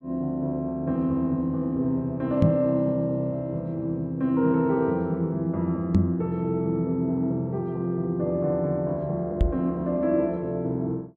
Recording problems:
microphone thump; at 2.5 s, at 6 s and at 9.5 s; peak +9 dB vs average level

